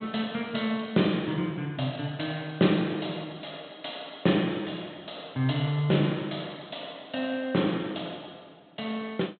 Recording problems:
low-pass filter; nothing above 4 kHz

